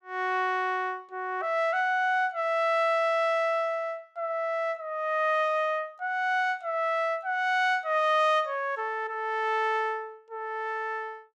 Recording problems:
none

